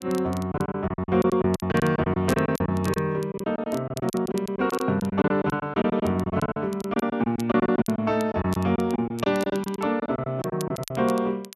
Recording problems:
crackle; vinyl, SNR 20 dB
packet loss; 17% of the sound replaced, filled with silence

